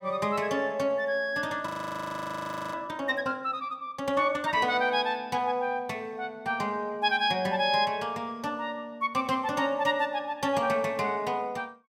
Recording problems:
frozen audio; at 1.5 s for 1 s

